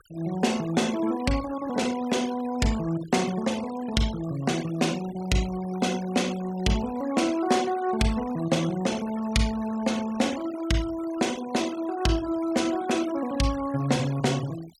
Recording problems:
noise reduction artefacts; signal-to-artefact ratio 16 dB

